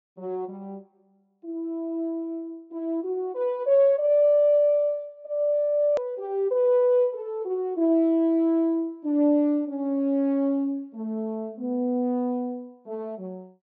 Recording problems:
low-pass filter; nothing above 8 kHz
hard cut with a click; at 6 s

